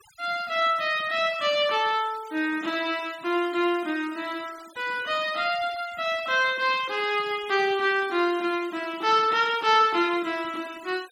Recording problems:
noise reduction artefacts; signal-to-artefact ratio 20 dB

